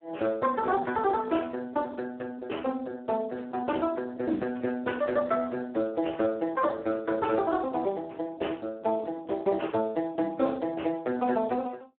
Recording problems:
phone line; 220 Hz to 3.2 kHz, Speex

